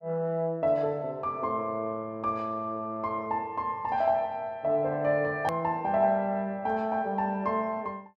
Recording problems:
hard cut with a click; at 5.5 s

